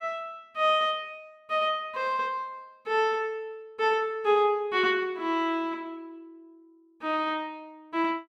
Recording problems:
none

